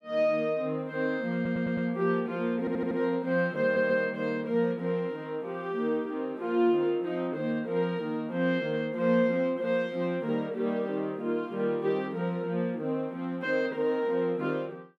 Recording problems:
stutter; at 1.5 s, at 2.5 s and at 3.5 s

